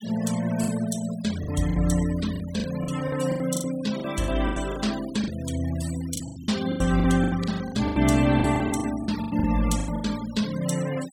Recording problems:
noise reduction artefacts; signal-to-artefact ratio 15 dB
lost packets; 16% of the sound replaced, filled with the last packet

